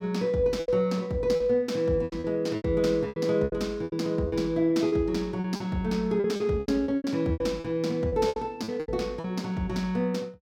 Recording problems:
lost packets; 14% of the sound replaced, filled with repeated pitch periods

